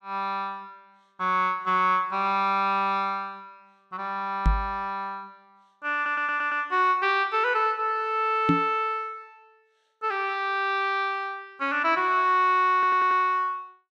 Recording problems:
microphone bump; at 4.5 s and at 8.5 s; peak +5 dB vs average level
audio stuttering; at 6 s and at 13 s

